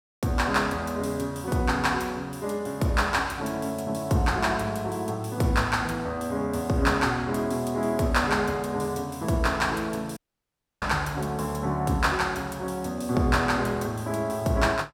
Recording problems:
audio cutting out; at 10 s for 0.5 s

